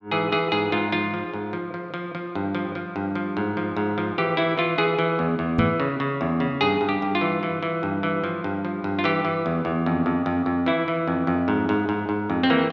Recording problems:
knock on the microphone; at 5.5 s; peak +5 dB vs average level

